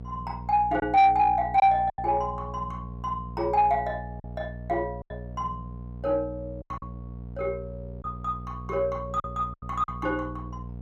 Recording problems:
distortion; soft clipping, signal-to-distortion ratio 12 dB
hum; 60 Hz, harmonics up to 660 Hz, SNR 13 dB
packet loss; 6% of the sound replaced, filled with silence

